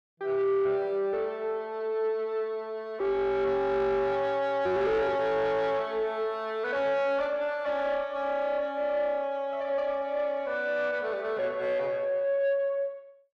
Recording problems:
distortion; soft clipping, signal-to-distortion ratio 12 dB

